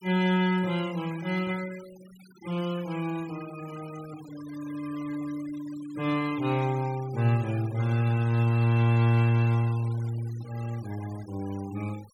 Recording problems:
noise reduction artefacts; signal-to-artefact ratio 20 dB

